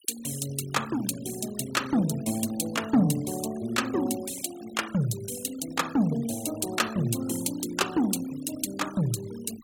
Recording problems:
noise reduction artefacts; signal-to-artefact ratio 15 dB

